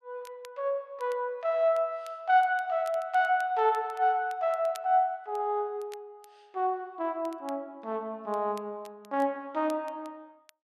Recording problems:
crackle; vinyl, SNR 27 dB

